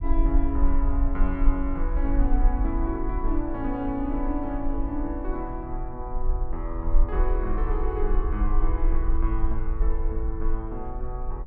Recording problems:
low-frequency rumble; below 42 Hz, strongest tone 22 Hz, SNR -2 dB

